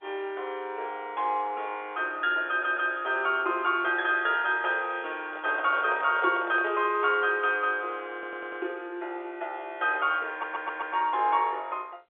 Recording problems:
telephone audio; 340 Hz to 3.8 kHz, G.711
stutter; at 2.5 s, at 8 s and at 10 s
handling noise; from 5.5 to 6.5 s; peak -6 dB vs average level

